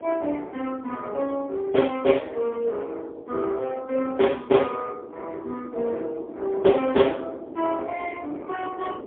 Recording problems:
telephone audio; 260 Hz to 3.4 kHz, AMR-NB, then MP3
wind noise; below 480 Hz, SNR 15 dB

